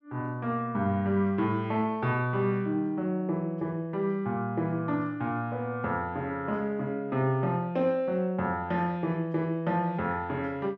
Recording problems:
none

